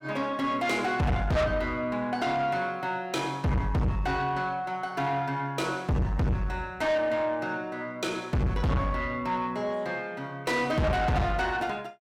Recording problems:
distorted audio; soft clipping, signal-to-distortion ratio 6 dB

